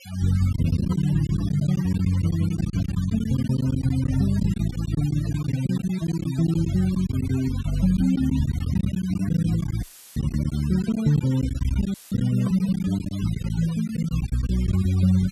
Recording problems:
denoising artefacts; signal-to-artefact ratio 18 dB
packet loss; 11% of the sound replaced, filled with silence
audio cutting out; at 10 s and at 12 s; filled with static

